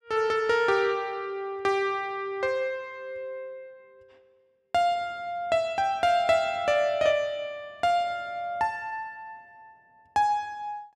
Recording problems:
none

